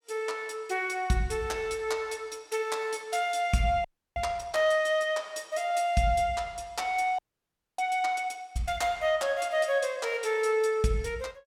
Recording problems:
frozen audio; at 4 s and at 7 s for 0.5 s

